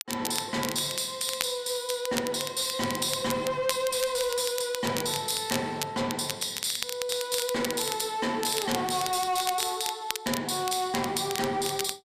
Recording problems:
distortion; soft clipping, signal-to-distortion ratio 12 dB
crackle; vinyl, SNR 7 dB

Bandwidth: 14.5 kHz